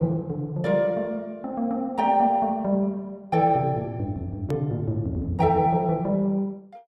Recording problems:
hard cut with a click; at 4.5 s

